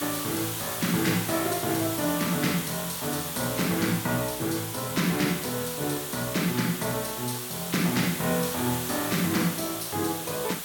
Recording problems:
hiss; slope 0 dB per octave, SNR 4 dB

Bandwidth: 17.5 kHz